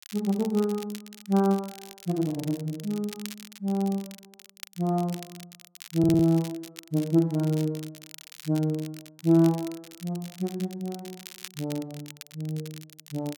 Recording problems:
crackling; vinyl, SNR 17 dB
audio stuttering; at 6 s

